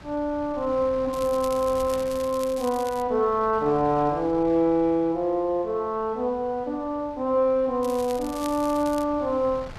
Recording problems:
wind noise; below 970 Hz, SNR 21 dB
crackle; from 1 to 3 s and from 8 to 9 s; loose cable, SNR 18 dB

